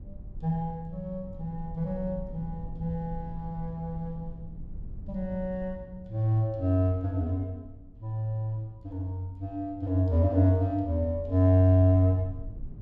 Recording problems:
low-frequency rumble; below 96 Hz, SNR 17 dB

